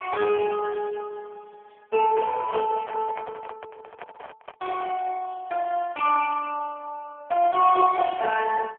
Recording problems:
phone line; 370 Hz to 2.5 kHz, AMR-NB
microphone handling noise; from 2 to 5 s; peak -7 dB vs average level

